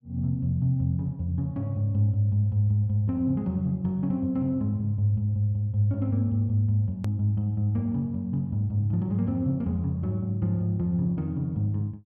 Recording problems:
edit click; at 7 s

